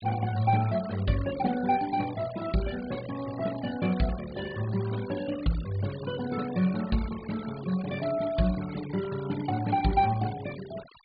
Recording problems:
low-pass filter; nothing above 4.7 kHz
denoising artefacts; signal-to-artefact ratio 16 dB

